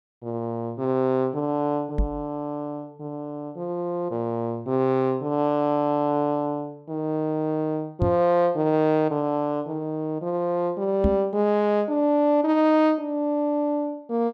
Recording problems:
knock on the microphone; at 2 s, at 8 s and at 11 s; peak +4 dB vs average level

